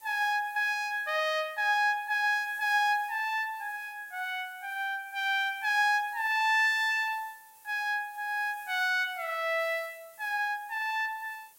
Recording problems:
hiss; SNR 24 dB

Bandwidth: 16 kHz